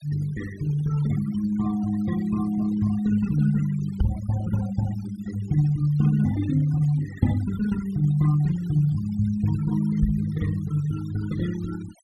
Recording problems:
denoising artefacts; signal-to-artefact ratio 19 dB
microphone thump; at 4 s and at 10 s; peak +4 dB vs average level

